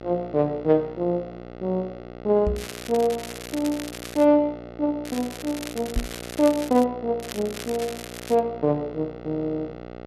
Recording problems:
electrical hum; 60 Hz, harmonics up to 2.9 kHz, SNR 14 dB
microphone bump; at 2.5 s and at 6 s; peak +2 dB vs average level
crackle; from 2.5 to 4.5 s, from 5 to 7 s and from 7 to 8.5 s; loose cable, SNR 13 dB

